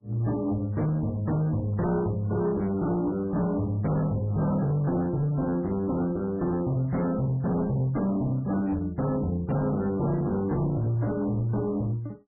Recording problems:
codec artefacts; MP3, log-spectral distance 2 dB, nothing above 11.3 kHz
distortion; hard clipping, uneven, signal-to-distortion ratio 8 dB

